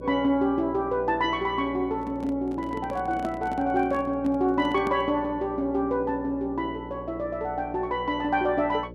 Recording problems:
hum; 60 Hz, harmonics up to 600 Hz, SNR 14 dB
microphone handling noise; from 2 to 5 s; peak -2 dB vs average level

